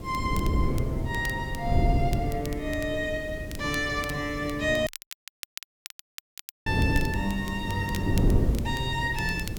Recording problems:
hiss; slope -2 dB per octave, SNR 22 dB
wind noise; below 230 Hz, SNR 1 dB
crackle; vinyl, SNR 14 dB
dropout; at 5 s for 2 s

